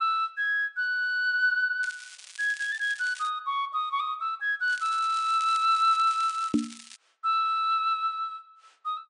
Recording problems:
lossy codec; MP3, log-spectral distance 3 dB, nothing above 9.2 kHz
crackle; from 2 to 3.5 s and from 4.5 to 7 s; loose cable, SNR 18 dB
knock on the microphone; at 6.5 s; peak +6 dB vs average level

